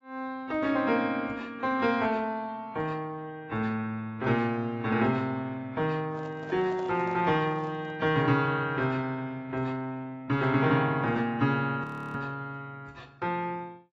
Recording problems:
lossy codec; AAC, log-spectral distance 2 dB
microphone handling noise; from 6 to 8 s; peak -12 dB vs average level
frozen audio; at 12 s

